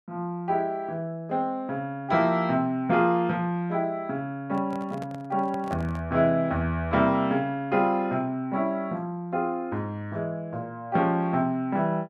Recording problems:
handling noise; from 4.5 to 6 s; peak -6 dB vs average level

